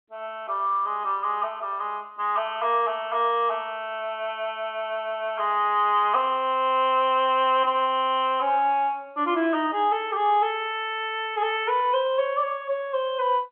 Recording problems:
phone line; 260 Hz to 3.4 kHz, G.711

